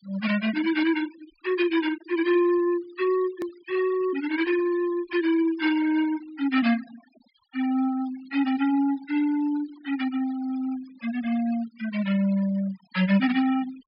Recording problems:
treble cut off; nothing above 5.5 kHz
noise reduction artefacts; signal-to-artefact ratio 18 dB
edit click; at 3.5 s

